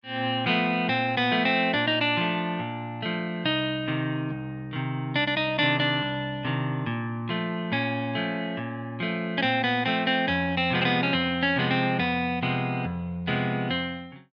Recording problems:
none

